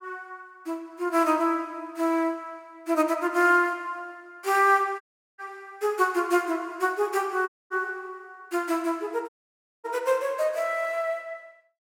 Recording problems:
audio cutting out; at 5 s, at 7.5 s and at 9.5 s for 0.5 s

